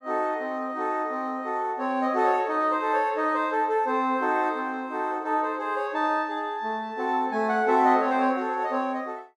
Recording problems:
none

